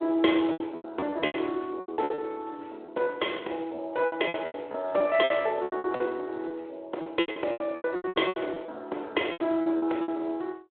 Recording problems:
telephone audio; 280 Hz to 3.6 kHz, Speex
packet loss; 18% of the sound replaced, filled with repeated pitch periods

